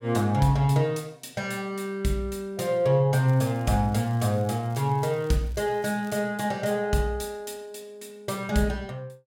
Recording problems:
crackling; from 3.5 to 6 s; loose cable, SNR 29 dB

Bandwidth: 16.5 kHz